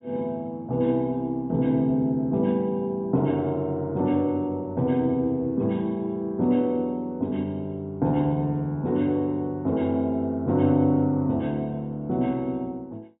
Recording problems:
low-pass filter; nothing above 3.8 kHz

